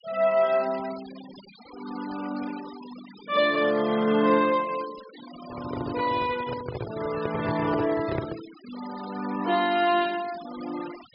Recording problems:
low-pass filter; nothing above 5.5 kHz
denoising artefacts; signal-to-artefact ratio 17 dB
microphone handling noise; from 5.5 to 8.5 s; peak 0 dB vs average level

